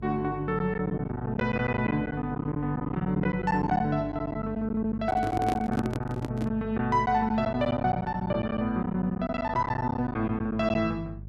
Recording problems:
electrical hum; 50 Hz, harmonics up to 400 Hz, SNR 14 dB
packet loss; 12% of the sound replaced, filled with silence
microphone handling noise; from 5 to 6.5 s; peak +1 dB vs average level

